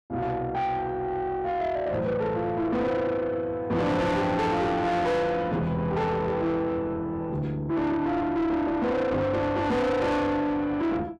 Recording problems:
distorted audio; soft clipping, signal-to-distortion ratio 7 dB

